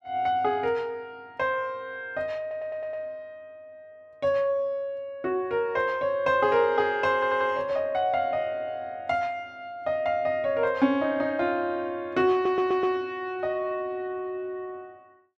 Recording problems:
audio stuttering; at 2.5 s, at 7 s and at 12 s

